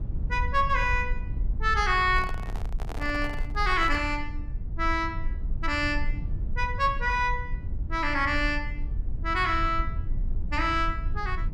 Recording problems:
low-frequency rumble; below 62 Hz, SNR 6 dB
microphone handling noise; from 2 to 4 s; peak -9 dB vs average level

